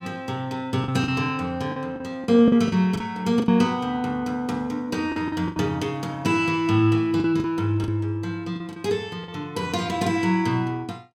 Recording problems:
packet loss; 7% of the sound replaced, filled with the last packet

